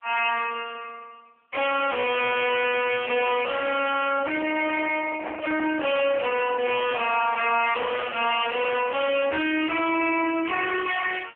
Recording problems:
phone line; 320 Hz to 3.2 kHz, AMR-NB
distortion; soft clipping, signal-to-distortion ratio 6 dB
microphone handling noise; from 4.5 to 8.5 s; peak -4 dB vs average level

